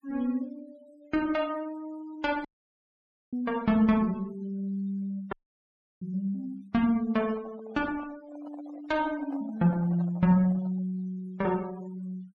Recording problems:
denoising artefacts; signal-to-artefact ratio 22 dB
audio cutting out; at 2.5 s for 1 s and at 5.5 s for 0.5 s
handling noise; from 7 to 11 s; peak -12 dB vs average level

